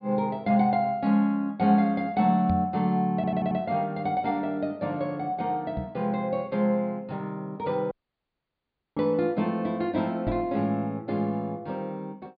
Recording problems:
treble cut off; nothing above 4.8 kHz
microphone bump; at 2.5 s, at 6 s and at 10 s; peak 0 dB vs average level
stutter; at 3 s
audio cutting out; at 8 s for 1 s

